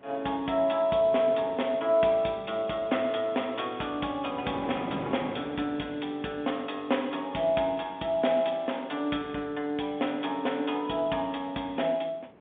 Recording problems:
phone line; 240 Hz to 3.6 kHz, G.711
wind noise; below 710 Hz, SNR 15 dB

